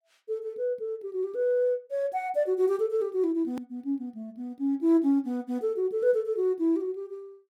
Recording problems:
click at an edit; at 3.5 s

